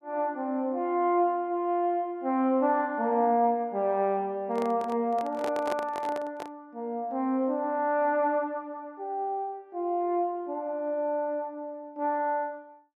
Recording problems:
handling noise; from 4.5 to 6.5 s; peak -3 dB vs average level

